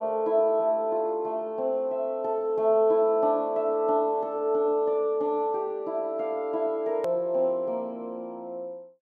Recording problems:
edit click; at 7 s

